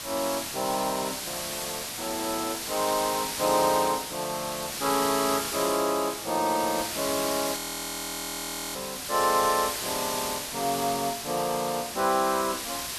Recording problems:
hiss; slope +1 dB per octave, SNR 3 dB
frozen audio; at 7.5 s for 1 s

